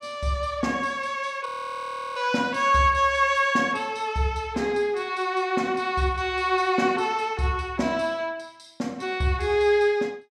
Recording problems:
audio freezing; at 1.5 s for 0.5 s

